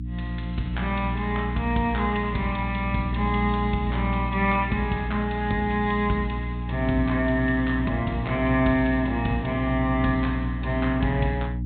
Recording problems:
treble missing; nothing above 4 kHz
electrical hum; 60 Hz, harmonics up to 300 Hz, SNR 4 dB

